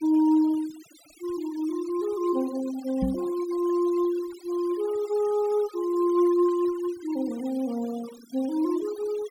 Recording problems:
denoising artefacts; signal-to-artefact ratio 21 dB
microphone thump; at 3 s; peak +2 dB vs average level

